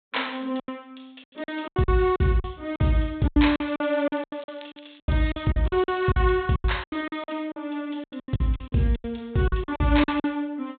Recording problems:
treble cut off; nothing above 4 kHz
packet loss; 18% of the sound replaced, filled with silence
crackling; from 3.5 to 6 s; loose cable, SNR 27 dB

